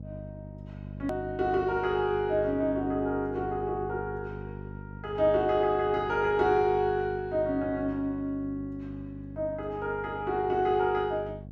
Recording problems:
hum; 50 Hz, harmonics up to 550 Hz, SNR 14 dB
edit click; at 1 s

